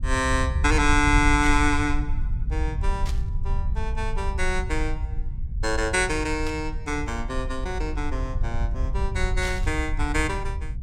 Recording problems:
low-frequency rumble; below 70 Hz, SNR 3 dB
static burst; 4 times, first at 1.5 s; peak -6 dB vs average level

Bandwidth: 17.5 kHz